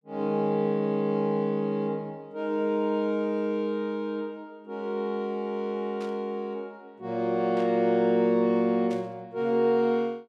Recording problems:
static burst; at 6 s, at 7.5 s and at 9 s; peak -13 dB vs average level

